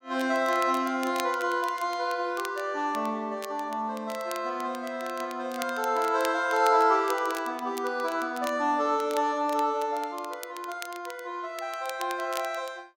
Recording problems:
crackling; vinyl, SNR 16 dB

